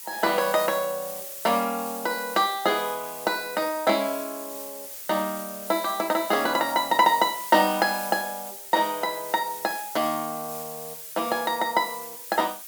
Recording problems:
background hiss; slope +3 dB per octave, SNR 10 dB

